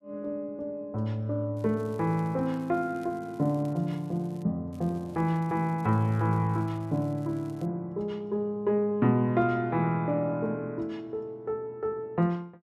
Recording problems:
crackling; from 1.5 to 4.5 s and from 4.5 to 7.5 s; loose cable, SNR 30 dB

